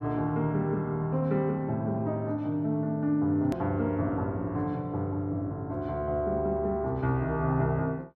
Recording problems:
edit click; at 3.5 s

